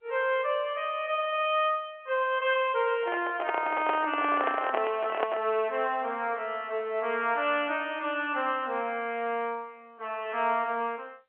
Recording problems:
telephone audio; 260 Hz to 3.4 kHz, G.711
microphone handling noise; from 3 to 5.5 s; peak +3 dB vs average level

